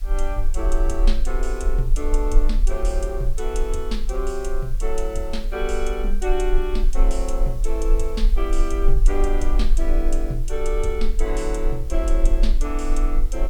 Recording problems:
background hiss; slope 0 dB per octave, SNR 22 dB
low-frequency rumble; below 36 Hz, strongest tone 20 Hz, SNR -3 dB

